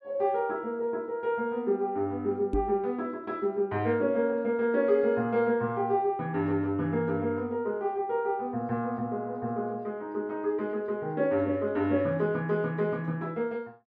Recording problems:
microphone thump; at 2.5 s; peak +2 dB vs average level

